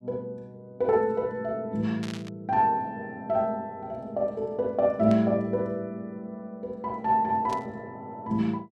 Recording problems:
static burst; at 2 s, at 5 s and at 7.5 s; peak -9 dB vs average level

